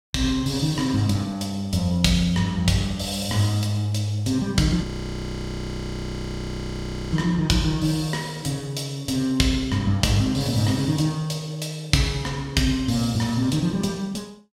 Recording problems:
frozen audio; at 5 s for 2.5 s

